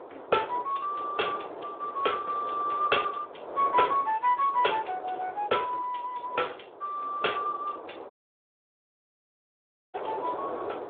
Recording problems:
phone line; 320 Hz to 3.6 kHz, Speex
wind noise; below 910 Hz, SNR 11 dB
dropout; at 8 s for 2 s

